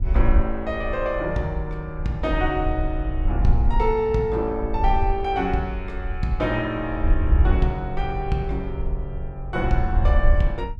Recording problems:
wind noise; below 62 Hz, SNR 1 dB

